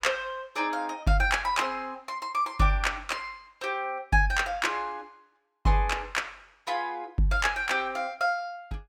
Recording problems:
none

